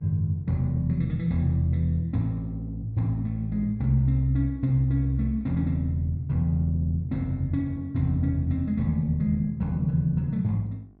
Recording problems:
electrical hum; 50 Hz, harmonics up to 1.1 kHz, SNR 31 dB

